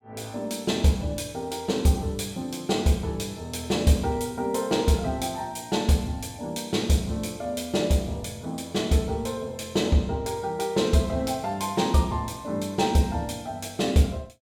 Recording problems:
none

